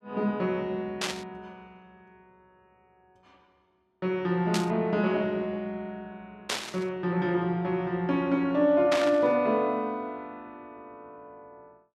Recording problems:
burst of static; 4 times, first at 1 s; peak +2 dB vs average level

